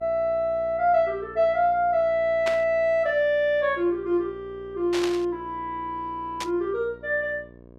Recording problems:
hum; 60 Hz, harmonics up to 1.1 kHz, SNR 23 dB
burst of static; at 2.5 s, at 5 s and at 6.5 s; peak -3 dB vs average level

